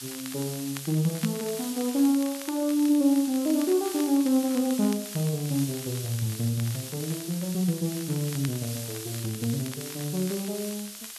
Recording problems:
background hiss; slope +4 dB per octave, SNR 10 dB
crackle; vinyl, SNR 18 dB

